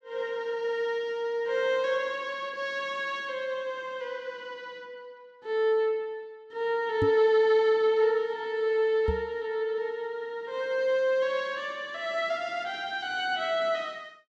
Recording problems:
microphone thump; at 7 s and at 9 s; peak +2 dB vs average level

